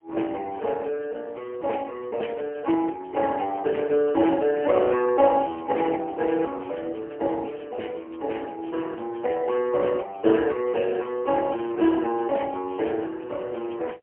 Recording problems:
phone line; 280 Hz to 3.1 kHz, AMR-NB, then MP3

